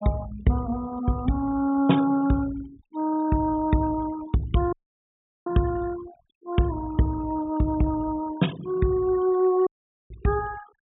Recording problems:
treble cut off; nothing above 4 kHz
noise reduction artefacts; signal-to-artefact ratio 19 dB
audio cutting out; at 4.5 s for 0.5 s and at 9.5 s

